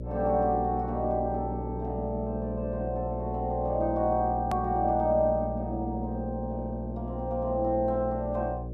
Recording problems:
hum; 60 Hz, harmonics up to 600 Hz, SNR 7 dB
edit click; at 4.5 s

